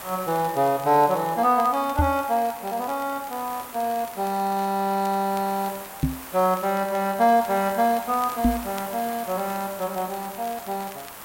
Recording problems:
hiss; SNR 14 dB
crackle; vinyl, SNR 23 dB
microphone thump; at 2 s, at 6 s and at 8.5 s; peak +5 dB vs average level

